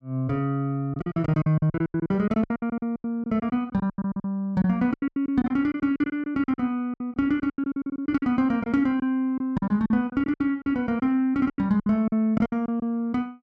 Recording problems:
lost packets; 18% of the sound replaced, filled with silence

